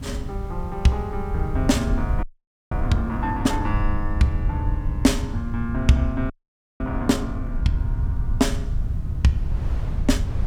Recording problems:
background hiss; slope -5 dB per octave, SNR 30 dB
rumble; below 90 Hz, SNR 3 dB
wind noise; below 1.1 kHz, SNR 25 dB
frozen audio; at 2 s and at 6.5 s for 0.5 s

